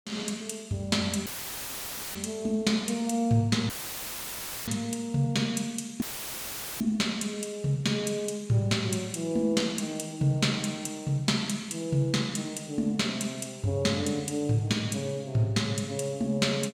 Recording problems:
audio cutting out; at 1.5 s for 1 s, at 3.5 s for 1 s and at 6 s for 1 s; filled with static

